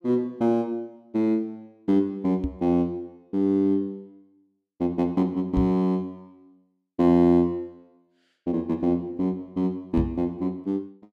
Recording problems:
microphone thump; at 2.5 s, at 5.5 s and at 10 s; peak +2 dB vs average level

